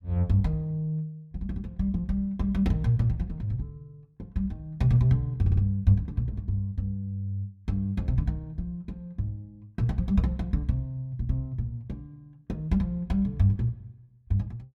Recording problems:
audio stuttering; at 5.5 s

